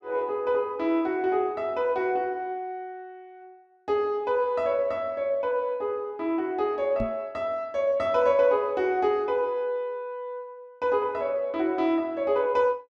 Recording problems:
microphone thump; at 7 s; peak -1 dB vs average level

